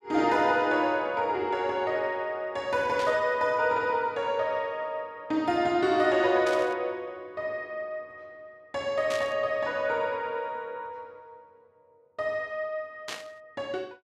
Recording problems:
burst of static; 4 times, first at 3 s; peak -4 dB vs average level

